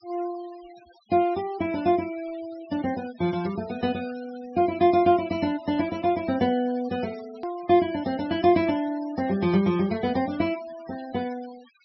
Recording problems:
low-pass filter; nothing above 5.6 kHz
denoising artefacts; signal-to-artefact ratio 21 dB
edit click; at 7.5 s

